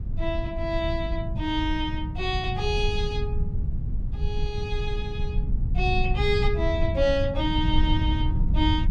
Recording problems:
low-frequency rumble; below 90 Hz, SNR 1 dB
wind noise; below 190 Hz, SNR 13 dB

